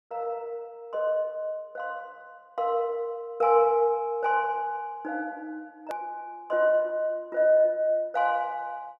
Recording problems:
hard cut with a click; at 6 s

